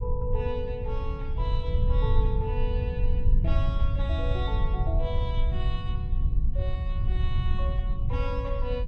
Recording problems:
rumble; below 76 Hz, SNR -7 dB

